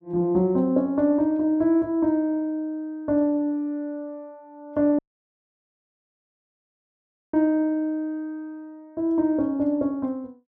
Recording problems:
audio cutting out; at 5 s for 2.5 s

